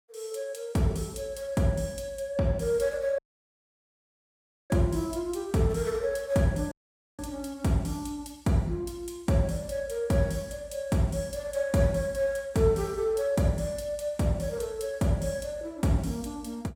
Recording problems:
dropout; at 3 s for 1.5 s and at 6.5 s

